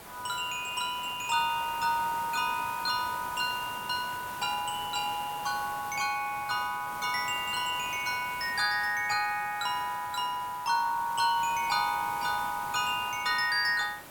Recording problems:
hiss; SNR 13 dB

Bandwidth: 17 kHz